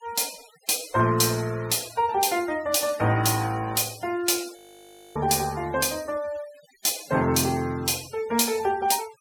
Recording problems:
noise reduction artefacts; signal-to-artefact ratio 19 dB
frozen audio; at 4.5 s for 0.5 s

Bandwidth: 17 kHz